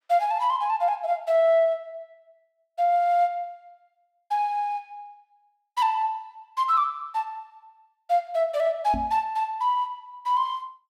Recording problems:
knock on the microphone; at 9 s; peak -4 dB vs average level

